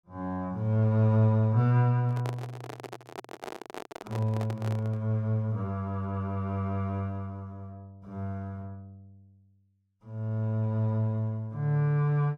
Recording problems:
handling noise; from 2 to 5 s; peak -5 dB vs average level

